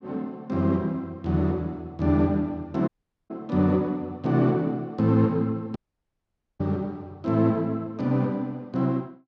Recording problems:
dropout; at 3 s and at 6 s for 1 s

